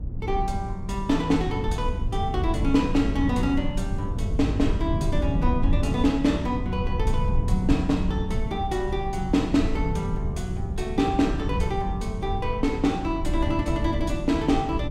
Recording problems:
low-frequency rumble; below 110 Hz, SNR 3 dB

